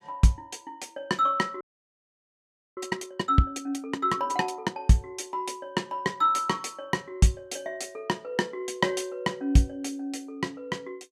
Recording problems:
frozen audio; at 1.5 s for 1 s

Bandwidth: 14.5 kHz